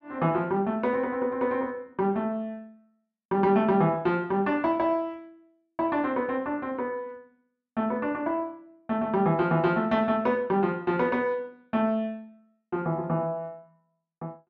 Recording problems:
none

